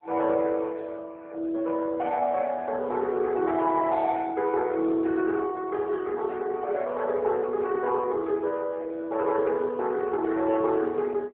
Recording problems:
telephone audio; 260 Hz to 2.6 kHz, AMR-NB

